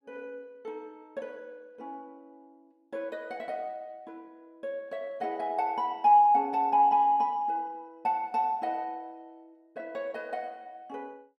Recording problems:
none

